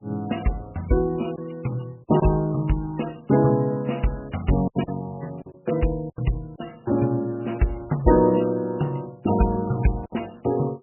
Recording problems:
codec artefacts; MP3, log-spectral distance 5 dB, nothing above 2.9 kHz
lost packets; 4% of the sound replaced, filled with silence

